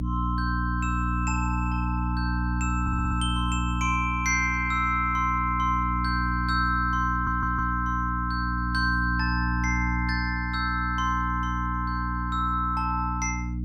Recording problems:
hum; 60 Hz, harmonics up to 300 Hz, SNR 2 dB
stutter; at 3 s and at 7 s

